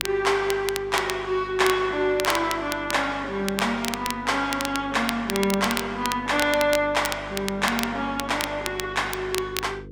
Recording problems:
electrical hum; 50 Hz, harmonics up to 500 Hz, SNR 18 dB
crackling; vinyl, SNR 8 dB

